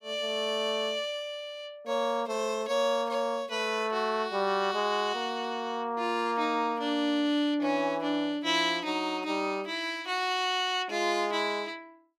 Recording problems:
none

